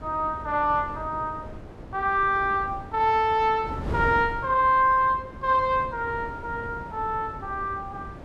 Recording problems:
wind on the microphone; below 410 Hz, SNR 14 dB

